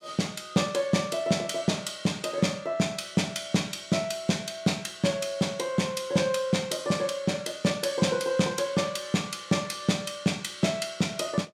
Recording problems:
none

